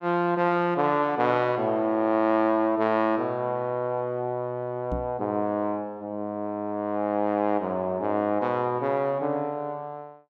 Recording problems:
microphone thump; at 5 s; peak -3 dB vs average level

